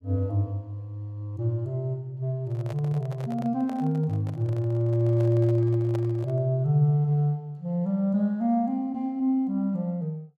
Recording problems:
microphone handling noise; from 2.5 to 6.5 s; peak -8 dB vs average level

